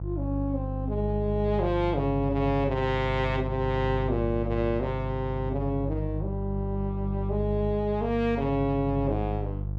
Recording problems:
hum; 50 Hz, harmonics up to 500 Hz, SNR 4 dB

